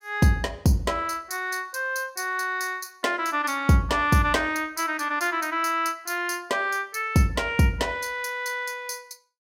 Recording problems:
none

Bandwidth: 16 kHz